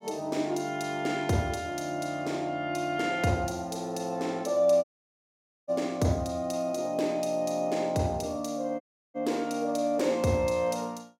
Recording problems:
dropout; at 5 s for 1 s and at 9 s

